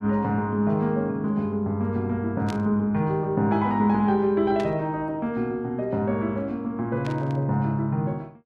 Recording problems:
static burst; at 2.5 s, at 4.5 s and at 7 s; peak -9 dB vs average level

